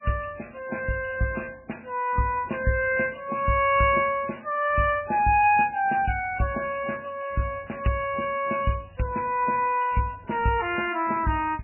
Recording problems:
lossy compression; MP3, log-spectral distance 8 dB, nothing above 2.5 kHz

